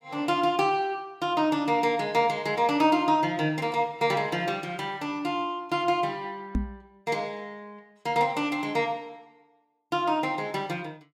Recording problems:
knock on the microphone; at 6.5 s; peak +3 dB vs average level

